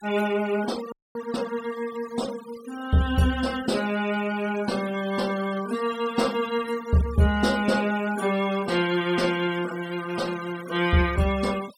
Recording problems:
denoising artefacts; signal-to-artefact ratio 17 dB
frozen audio; at 1 s

